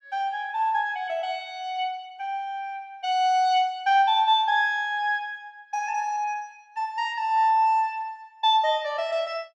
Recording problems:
none

